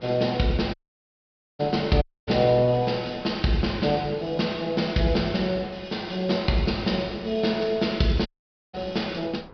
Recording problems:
low-pass filter; nothing above 5.5 kHz
wind on the microphone; below 810 Hz, SNR 24 dB
dropout; at 0.5 s for 1 s, at 2 s and at 8.5 s

